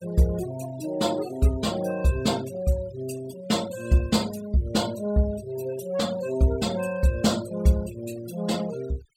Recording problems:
noise reduction artefacts; signal-to-artefact ratio 18 dB

